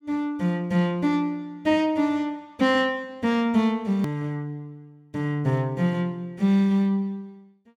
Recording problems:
edit click; at 4 s

